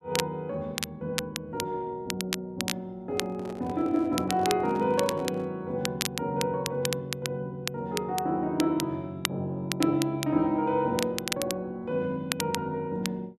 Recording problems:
crackle; vinyl, SNR 6 dB
handling noise; from 3 to 5.5 s; peak -8 dB vs average level

